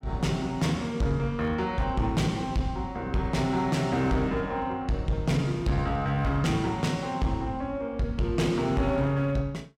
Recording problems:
distortion; hard clipping, signal-to-distortion ratio 12 dB

